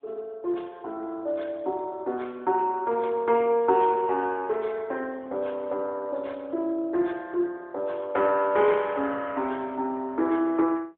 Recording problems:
telephone audio; 280 Hz to 3.5 kHz, AMR-NB

